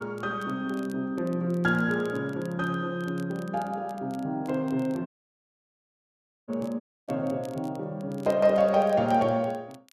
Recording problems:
crackle; vinyl, SNR 28 dB
dropout; at 5 s for 1.5 s and at 7 s

